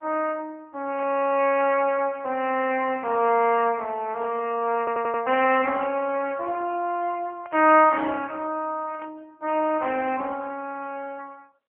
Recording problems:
phone line; 280 Hz to 3.1 kHz, AMR-NB
burst of static; at 1 s, at 7.5 s and at 9 s; peak -14 dB vs average level
audio stuttering; at 5 s

